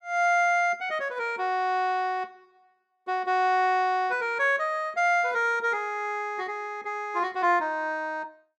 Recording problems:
none

